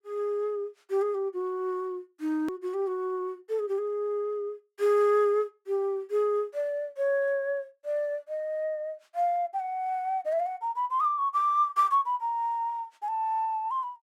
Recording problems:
hard cut with a click; at 2.5 s

